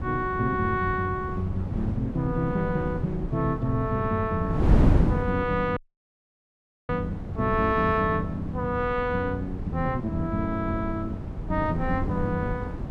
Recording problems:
wind on the microphone; below 210 Hz, SNR 4 dB
dropout; at 6 s for 1 s

